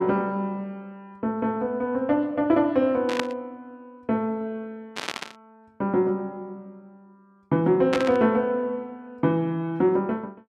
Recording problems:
static burst; at 3 s, at 5 s and at 8 s; peak +1 dB vs average level

